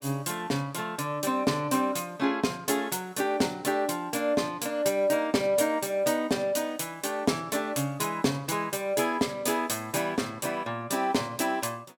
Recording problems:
none

